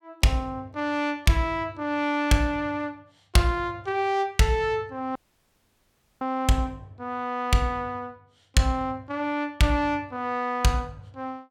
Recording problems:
audio cutting out; at 5 s for 1 s

